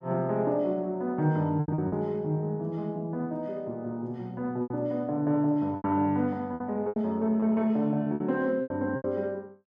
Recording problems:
packet loss; 8% of the sound replaced, filled with repeated pitch periods

